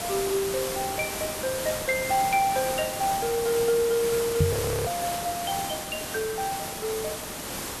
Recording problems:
background hiss; slope -3 dB per octave, SNR 4 dB
microphone bump; at 4.5 s; peak +8 dB vs average level
frozen audio; at 4.5 s

